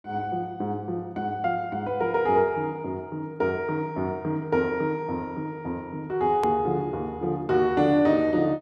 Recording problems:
hard cut with a click; at 6.5 s

